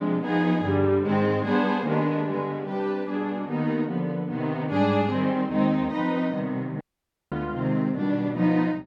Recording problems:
dropout; at 7 s for 0.5 s

